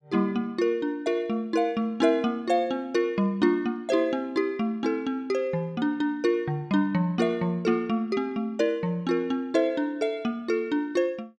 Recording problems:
none

